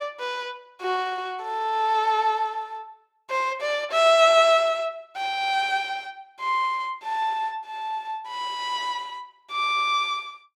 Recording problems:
none

